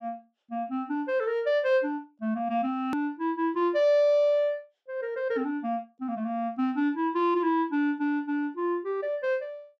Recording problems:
edit click; at 3 s

